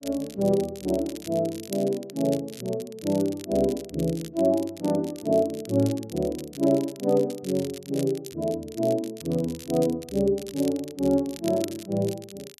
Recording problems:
crackling; vinyl, SNR 17 dB

